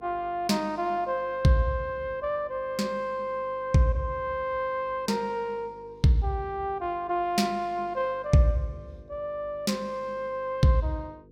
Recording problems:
electrical hum; 50 Hz, harmonics up to 500 Hz, SNR 25 dB

